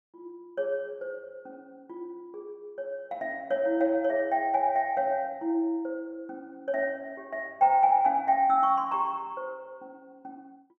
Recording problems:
none

